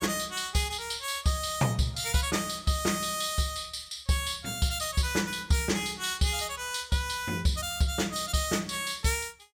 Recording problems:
none

